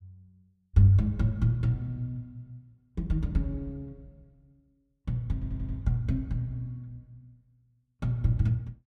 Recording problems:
stutter; at 5.5 s

